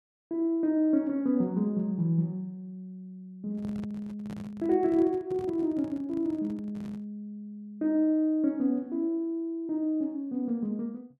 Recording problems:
microphone handling noise; from 3.5 to 7 s; peak -9 dB vs average level

